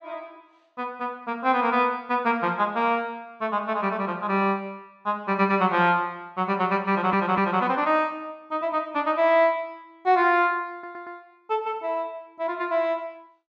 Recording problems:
audio stuttering; at 7 s and at 11 s

